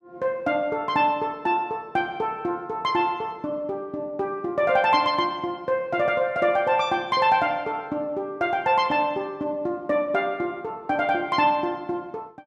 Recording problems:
none

